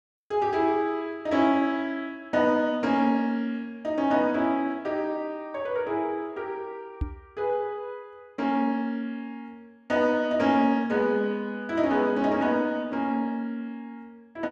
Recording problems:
microphone thump; at 7 s; peak +1 dB vs average level

